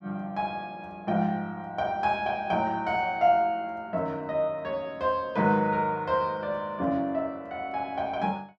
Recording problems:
none

